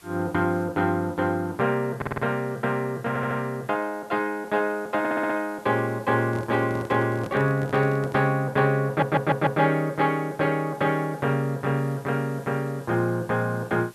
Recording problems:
background hiss; slope -1 dB per octave, SNR 27 dB
stutter; 4 times, first at 2 s
microphone handling noise; from 6.5 to 8.5 s; peak -7 dB vs average level

